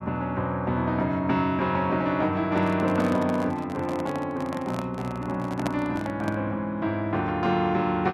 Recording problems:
microphone handling noise; from 2.5 to 6.5 s; peak +1 dB vs average level

